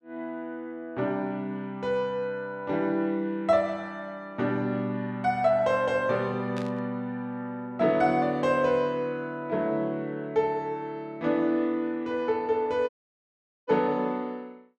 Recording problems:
static burst; at 6.5 s; peak -9 dB vs average level
audio cutting out; at 13 s for 1 s

